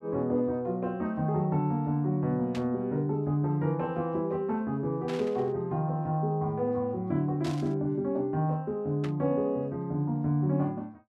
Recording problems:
static burst; 4 times, first at 2.5 s; peak -8 dB vs average level

